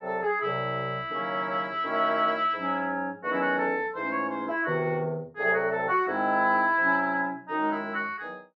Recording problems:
none

